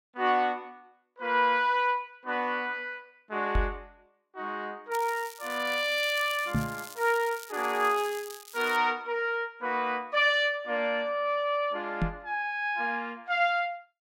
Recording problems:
microphone bump; at 3.5 s, at 6.5 s and at 12 s; peak +3 dB vs average level
crackle; from 5 to 9 s; loose cable, SNR 16 dB

